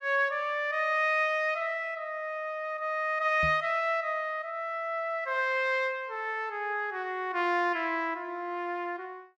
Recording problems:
microphone bump; at 3.5 s; peak -4 dB vs average level

